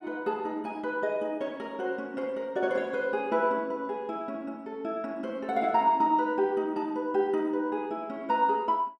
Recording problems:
none

